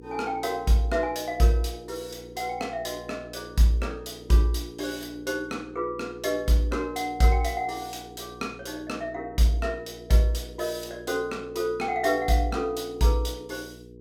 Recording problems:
electrical hum; 60 Hz, harmonics up to 480 Hz, SNR 19 dB

